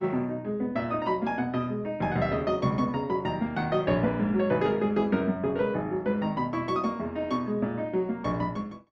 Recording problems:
lossy codec; Opus, log-spectral distance 2 dB, nothing above 10.4 kHz

